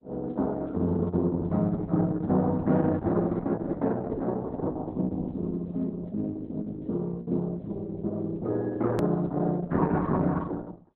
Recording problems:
codec artefacts; Opus, log-spectral distance 2 dB, nothing above 13.1 kHz
edit click; at 9 s

